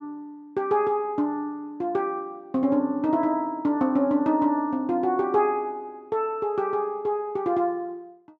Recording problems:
none

